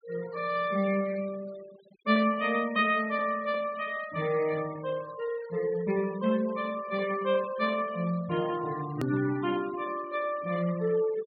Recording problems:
low-pass filter; nothing above 4.7 kHz
denoising artefacts; signal-to-artefact ratio 18 dB
edit click; at 9 s

